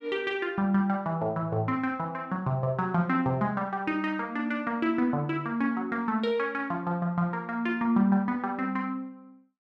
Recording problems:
none

